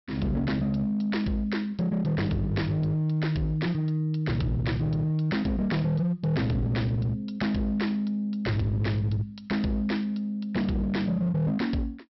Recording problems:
low-pass filter; nothing above 5.6 kHz
distorted audio; hard clipping, uneven, signal-to-distortion ratio 11 dB

